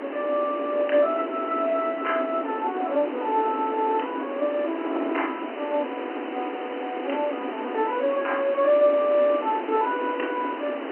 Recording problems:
phone line; 240 Hz to 3.1 kHz, G.711
background hiss; SNR 15 dB
wind noise; below 680 Hz, SNR 7 dB

